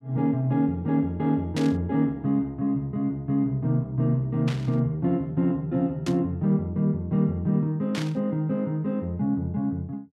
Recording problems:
static burst; 4 times, first at 1.5 s; peak -5 dB vs average level

